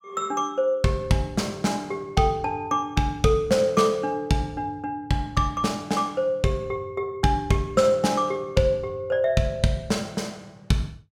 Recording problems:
none

